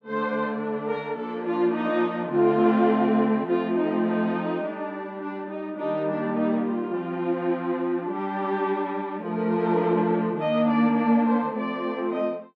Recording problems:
none

